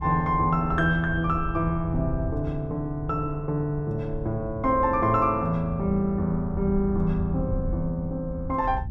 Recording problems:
wind on the microphone; below 100 Hz, SNR 10 dB

